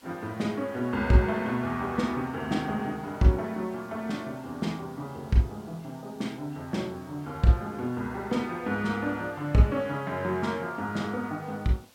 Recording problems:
hiss; slope -1 dB per octave, SNR 27 dB

